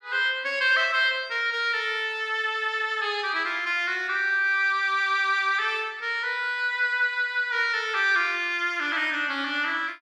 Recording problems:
none

